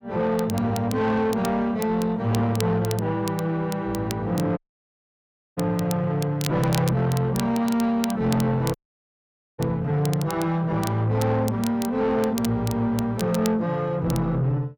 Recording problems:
distortion; soft clipping, signal-to-distortion ratio 11 dB
crackle; vinyl, SNR 15 dB
audio cutting out; at 4.5 s for 1 s and at 9 s for 1 s

